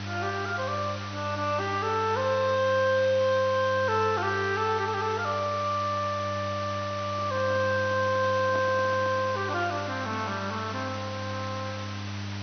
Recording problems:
treble missing; nothing above 6.1 kHz
hum; 50 Hz, harmonics up to 400 Hz, SNR 11 dB
hiss; SNR 12 dB
crackling; from 4 to 6 s and from 7 to 9 s; loose cable, SNR 27 dB
microphone handling noise; from 7 to 9.5 s; peak -7 dB vs average level

